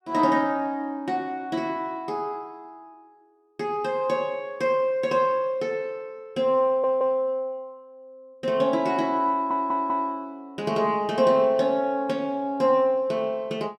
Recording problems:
stutter; at 6.5 s and at 9.5 s

